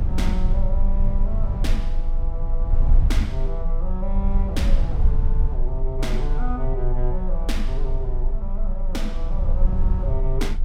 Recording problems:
low-frequency rumble; below 44 Hz, strongest tone 24 Hz, SNR -7 dB

